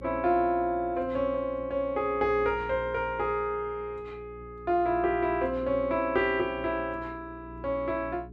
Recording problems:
hum; 60 Hz, harmonics up to 420 Hz, SNR 18 dB

